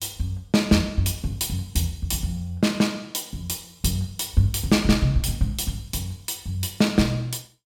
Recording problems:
none

